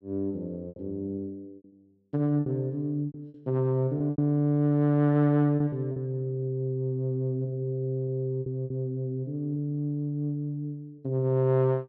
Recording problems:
lost packets; 6% of the sound replaced, filled with repeated pitch periods

